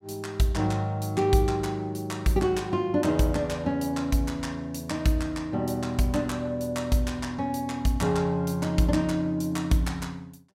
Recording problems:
none

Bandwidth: 16.5 kHz